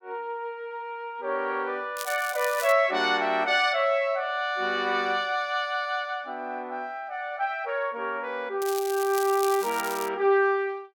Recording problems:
crackle; at 2 s and from 8.5 to 10 s; loose cable, SNR 11 dB

